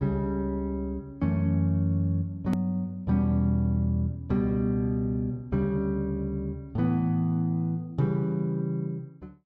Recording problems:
edit click; at 2.5 s

